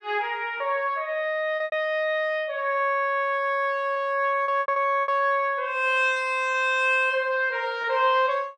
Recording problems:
packet loss; 5% of the sound replaced, filled with repeated pitch periods

